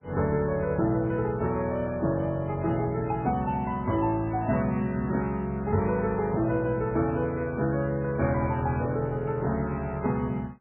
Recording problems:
lossy compression; MP3, log-spectral distance 2 dB, nothing above 2.5 kHz

